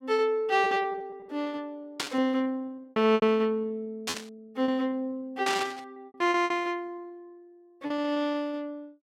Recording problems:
packet loss; 16% of the sound replaced, filled with repeated pitch periods
burst of static; at 2 s, at 4 s and at 5.5 s; peak +3 dB vs average level

